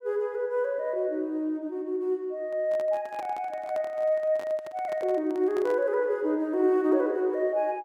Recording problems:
handling noise; from 2.5 to 6 s; peak -9 dB vs average level

